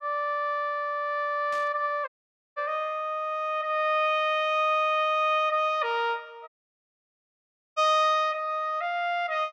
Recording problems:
static burst; at 1.5 s; peak -15 dB vs average level
dropout; at 2 s and at 6.5 s for 1.5 s

